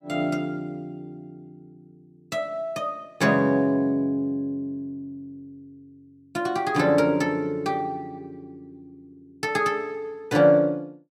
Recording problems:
none

